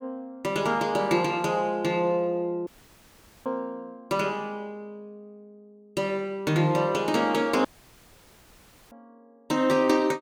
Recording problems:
dropout; at 2.5 s for 1 s and at 7.5 s for 1.5 s

